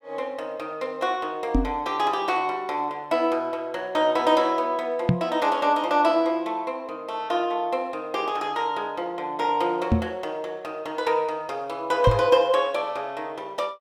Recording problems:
microphone bump; 4 times, first at 1.5 s; peak +8 dB vs average level

